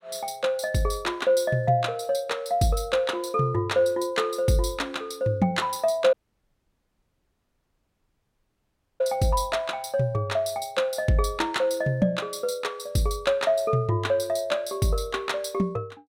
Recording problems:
dropout; at 6 s for 3 s

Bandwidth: 16 kHz